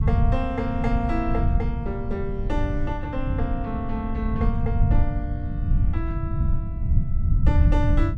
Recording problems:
low-frequency rumble; below 100 Hz, SNR -5 dB

